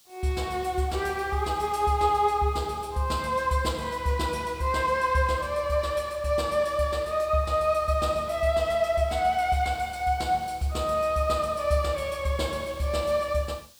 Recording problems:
hiss; SNR 27 dB

